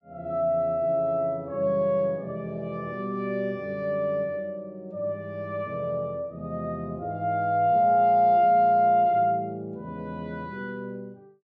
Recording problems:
none

